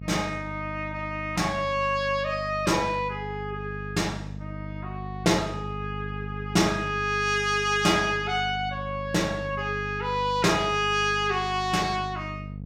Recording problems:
hum; 50 Hz, harmonics up to 500 Hz, SNR 11 dB

